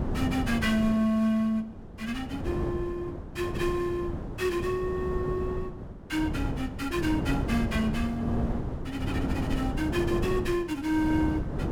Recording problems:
wind on the microphone; below 310 Hz, SNR 4 dB

